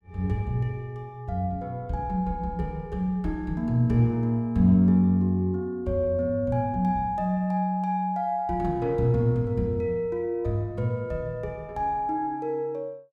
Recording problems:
none

